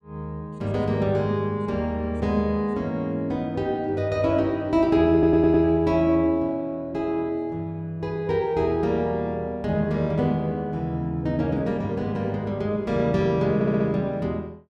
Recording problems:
stutter; at 5 s and at 14 s

